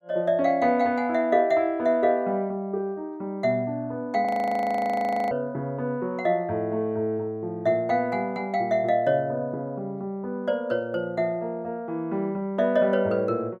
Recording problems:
audio freezing; at 4.5 s for 1 s

